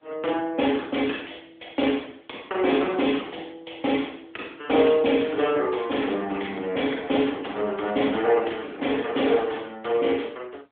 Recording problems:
phone line; 260 Hz to 3.5 kHz, AMR-NB

